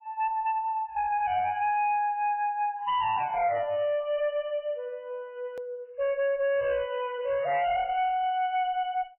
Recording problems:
codec artefacts; MP3, log-spectral distance 2 dB, nothing above 2.8 kHz
distorted audio; hard clipping, uneven, signal-to-distortion ratio 10 dB
edit click; at 5.5 s

